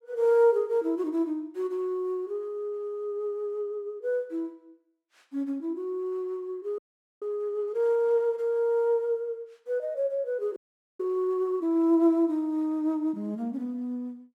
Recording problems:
frozen audio; at 7 s and at 11 s

